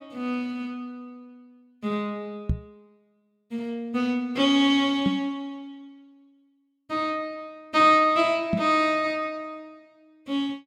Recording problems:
knock on the microphone; at 2.5 s, at 5 s and at 8.5 s; peak +2 dB vs average level

